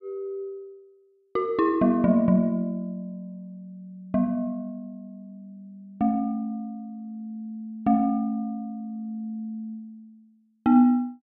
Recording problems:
none

